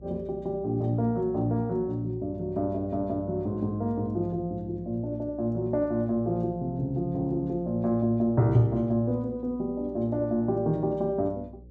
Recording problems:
hum; 60 Hz, harmonics up to 540 Hz, SNR 21 dB

